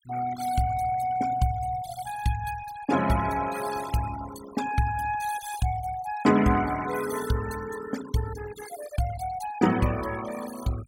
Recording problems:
denoising artefacts; signal-to-artefact ratio 11 dB

